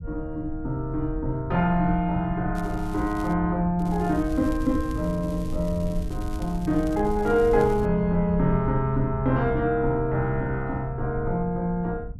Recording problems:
low-frequency rumble; below 84 Hz, SNR 10 dB
crackle; at 2.5 s and from 4 to 8 s; loose cable, SNR 24 dB

